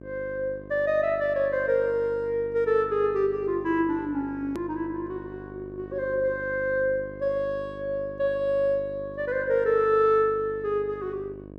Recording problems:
electrical hum; 50 Hz, harmonics up to 1.1 kHz, SNR 16 dB
hard cut with a click; at 4.5 s

